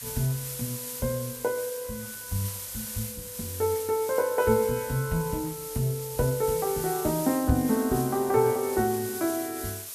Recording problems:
hiss; slope +1 dB per octave, SNR 8 dB
microphone thump; at 7.5 s; peak +6 dB vs average level

